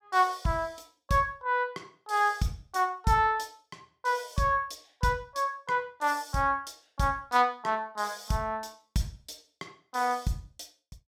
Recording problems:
none

